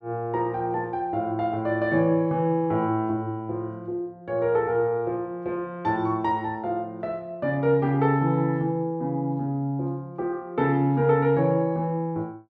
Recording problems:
none

